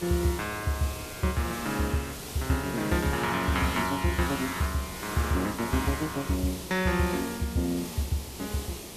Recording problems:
hiss; SNR 9 dB

